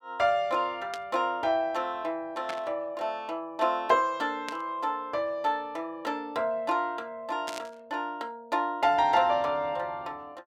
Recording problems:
static burst; 4 times, first at 1 s; peak -4 dB vs average level

